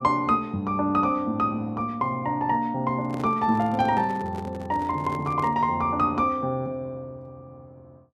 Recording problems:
microphone handling noise; from 3 to 5.5 s; peak -9 dB vs average level

